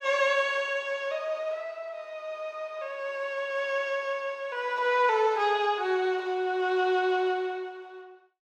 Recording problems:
none

